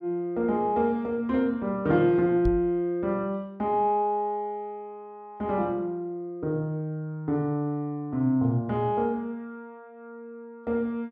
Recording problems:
knock on the microphone; at 2.5 s; peak +1 dB vs average level

